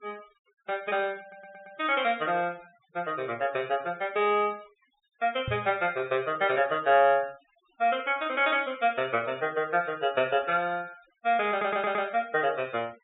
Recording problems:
treble missing; nothing above 4 kHz
denoising artefacts; signal-to-artefact ratio 25 dB
stutter; at 1 s and at 12 s
microphone bump; at 5.5 s; peak -4 dB vs average level

